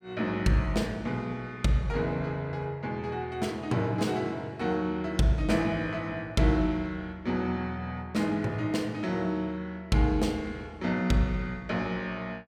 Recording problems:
none

